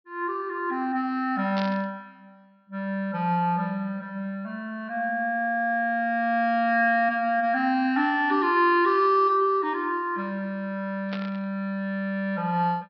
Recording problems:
treble cut off; nothing above 5.5 kHz
burst of static; at 1.5 s and at 11 s; peak -6 dB vs average level

